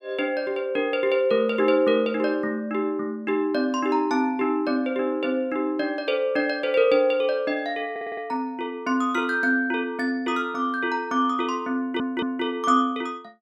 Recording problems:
stutter; at 8 s and at 12 s

